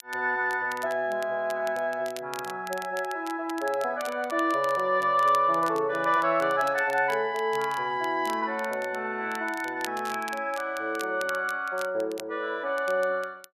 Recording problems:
crackle; vinyl, SNR 18 dB

